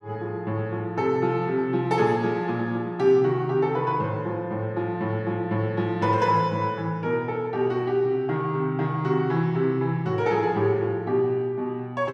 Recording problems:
none

